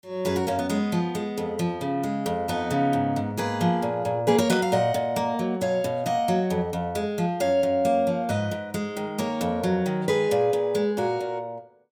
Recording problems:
static burst; at 4.5 s; peak -5 dB vs average level

